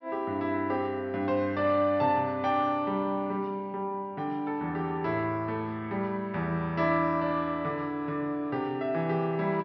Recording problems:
treble missing; nothing above 5.9 kHz

